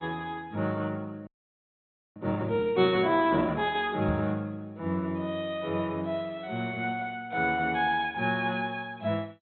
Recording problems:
codec artefacts; MP2, log-spectral distance 2 dB
audio freezing; at 1.5 s for 1 s
microphone bump; at 4 s; peak +1 dB vs average level

